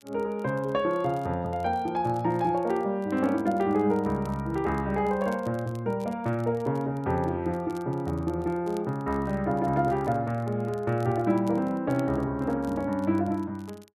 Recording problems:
crackle; vinyl, SNR 29 dB

